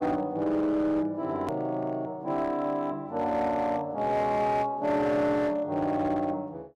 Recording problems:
distortion; hard clipping, signal-to-distortion ratio 12 dB
edit click; at 1.5 s

